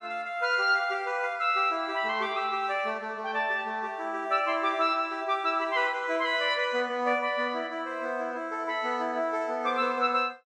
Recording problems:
none

